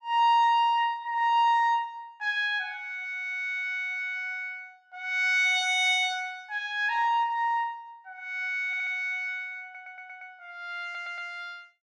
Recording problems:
stutter; at 8.5 s, at 9.5 s and at 11 s

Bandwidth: 14.5 kHz